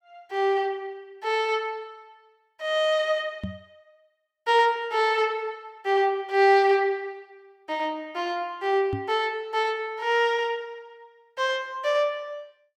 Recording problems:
microphone bump; at 3.5 s and at 9 s; peak -2 dB vs average level

